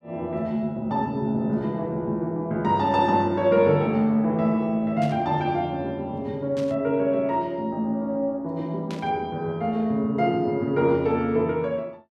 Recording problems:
burst of static; at 5 s, at 6.5 s and at 9 s; peak -11 dB vs average level

